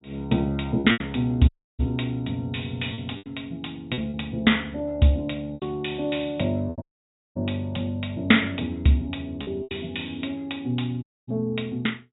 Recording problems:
treble cut off; nothing above 4 kHz
packet loss; 6% of the sound replaced, filled with repeated pitch periods
audio cutting out; at 1.5 s, at 7 s for 0.5 s and at 11 s

